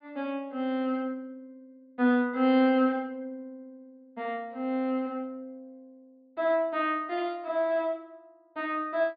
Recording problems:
treble missing; nothing above 4.8 kHz

